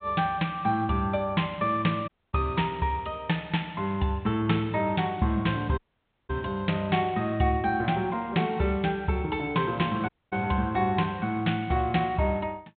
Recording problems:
treble missing; nothing above 4 kHz
dropout; at 2 s, at 6 s for 0.5 s and at 10 s

